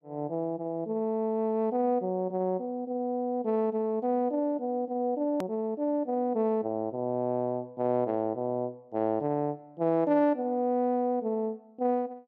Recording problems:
click at an edit; at 5.5 s

